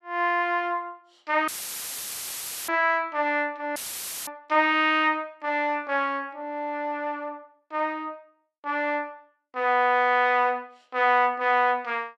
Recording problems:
dropout; at 1.5 s for 1 s and at 4 s for 0.5 s; filled with static

